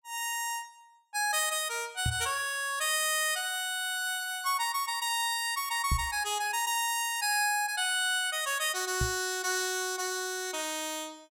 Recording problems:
microphone thump; at 2 s, at 6 s and at 9 s; peak +3 dB vs average level

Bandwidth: 16.5 kHz